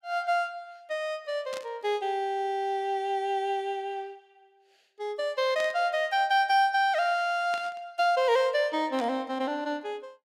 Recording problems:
static burst; 4 times, first at 1.5 s; peak -9 dB vs average level

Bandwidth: 16 kHz